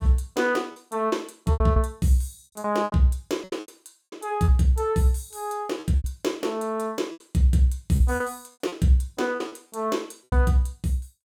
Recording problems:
lost packets; 11% of the sound replaced, filled with repeated pitch periods

